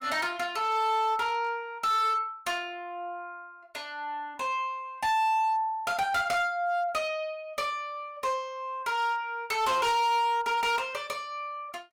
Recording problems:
distorted audio; hard clipping, signal-to-distortion ratio 10 dB

